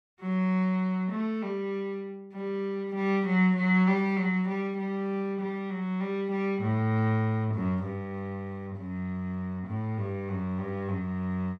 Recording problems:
none

